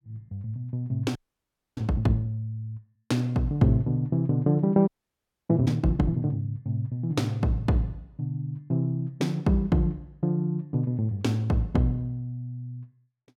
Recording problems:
audio freezing; at 1 s for 0.5 s and at 5 s for 0.5 s

